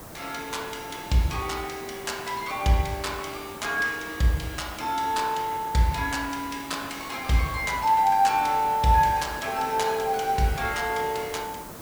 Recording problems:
background hiss; SNR 15 dB

